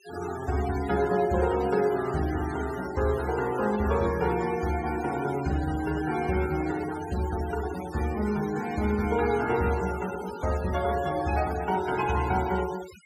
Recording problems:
denoising artefacts; signal-to-artefact ratio 14 dB

